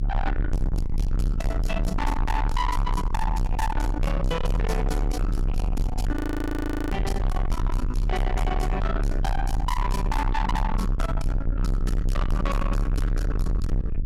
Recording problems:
distortion; soft clipping, signal-to-distortion ratio 6 dB
electrical hum; 50 Hz, harmonics up to 300 Hz, SNR 14 dB
low-frequency rumble; below 96 Hz, strongest tone 36 Hz, SNR -1 dB
audio freezing; at 6 s for 1 s

